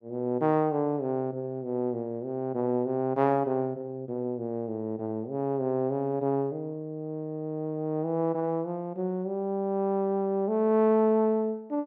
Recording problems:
none

